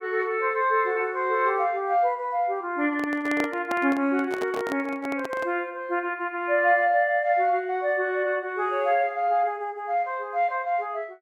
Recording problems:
handling noise; from 3 to 5.5 s; peak -2 dB vs average level

